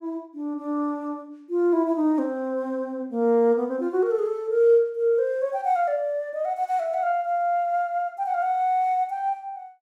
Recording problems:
none

